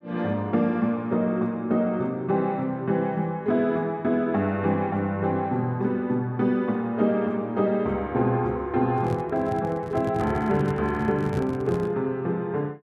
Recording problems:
handling noise; from 9 to 12 s; peak -2 dB vs average level

